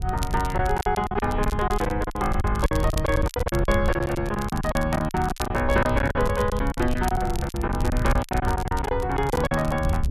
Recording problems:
wind on the microphone; below 98 Hz, SNR 4 dB
crackle; vinyl, SNR 16 dB
packet loss; 17% of the sound replaced, filled with silence

